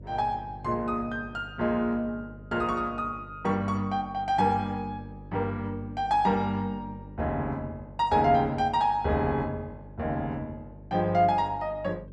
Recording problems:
hum; 50 Hz, harmonics up to 600 Hz, SNR 18 dB

